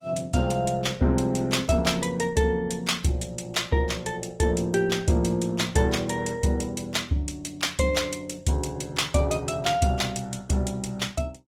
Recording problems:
lossy compression; Opus, log-spectral distance 4 dB, nothing above 19 kHz

